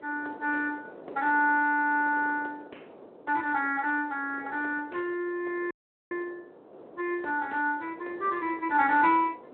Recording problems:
phone line; 320 Hz to 3.3 kHz, Speex
wind on the microphone; below 640 Hz, SNR 19 dB
audio cutting out; at 5.5 s

